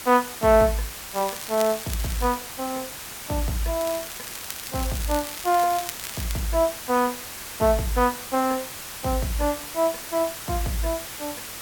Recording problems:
hiss; slope 0 dB per octave, SNR 9 dB
crackling; from 1 to 2.5 s and from 4 to 6.5 s; loose cable, SNR 12 dB

